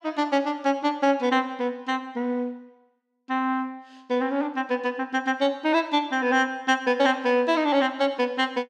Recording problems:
none

